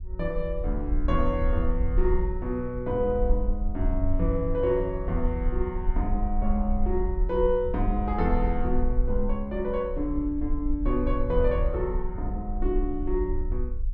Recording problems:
low-frequency rumble; below 50 Hz, SNR 2 dB

